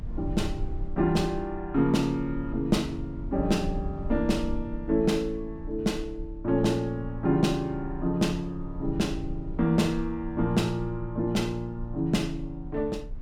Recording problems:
rumble; below 68 Hz, SNR 12 dB

